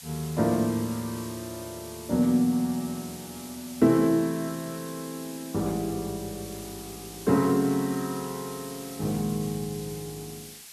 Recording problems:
hiss; slope +3 dB per octave, SNR 14 dB

